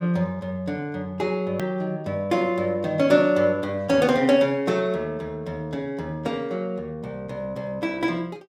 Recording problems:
click at an edit; at 1.5 s

